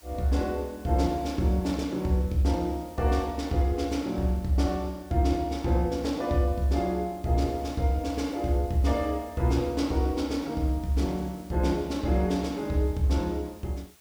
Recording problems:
background hiss; slope -1 dB per octave, SNR 26 dB

